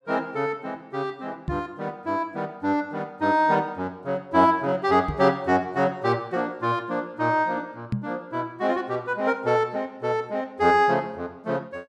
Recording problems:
microphone thump; at 1.5 s, at 5 s and at 8 s; peak +2 dB vs average level

